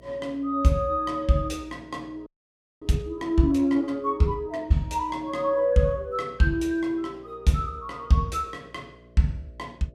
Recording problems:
hum; 60 Hz, harmonics up to 660 Hz, SNR 27 dB
audio freezing; at 2.5 s for 0.5 s

